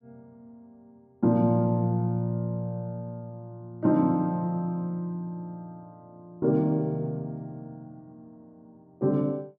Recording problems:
none

